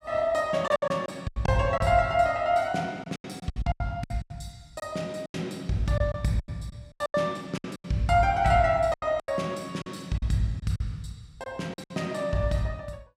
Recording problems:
packet loss; 13% of the sound replaced, filled with silence

